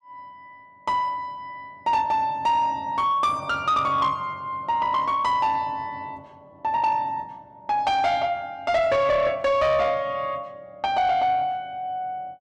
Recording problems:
distorted audio; soft clipping, signal-to-distortion ratio 12 dB

